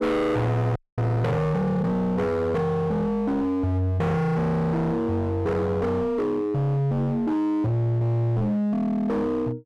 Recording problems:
distorted audio; hard clipping, uneven, signal-to-distortion ratio 6 dB
frozen audio; at 1 s

